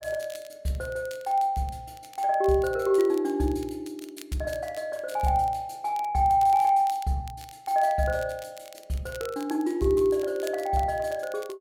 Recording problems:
crackle; vinyl, SNR 22 dB

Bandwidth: 16.5 kHz